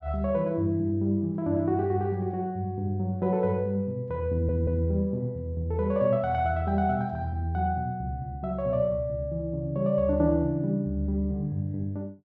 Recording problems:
audio stuttering; at 4.5 s

